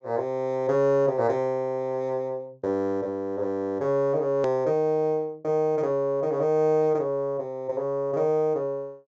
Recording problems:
low-pass filter; nothing above 8 kHz
hard cut with a click; at 4.5 s

